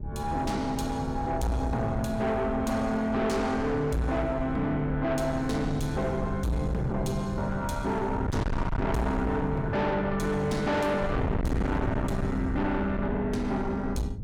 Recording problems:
distorted audio; soft clipping, signal-to-distortion ratio 6 dB
wind on the microphone; below 230 Hz, SNR 6 dB

